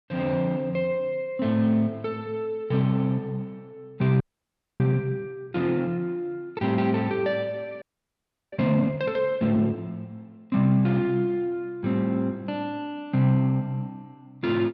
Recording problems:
frozen audio; at 4 s for 0.5 s and at 8 s for 0.5 s

